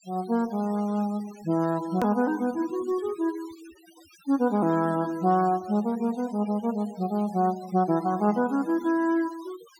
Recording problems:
noise reduction artefacts; signal-to-artefact ratio 22 dB
hard cut with a click; at 2 s

